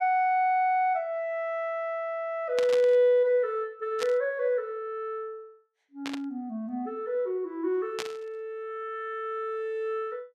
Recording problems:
static burst; 4 times, first at 2.5 s; peak -2 dB vs average level

